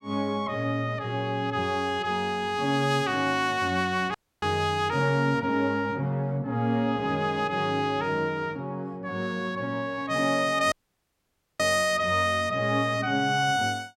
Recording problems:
dropout; at 4 s and at 11 s for 1 s

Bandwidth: 16.5 kHz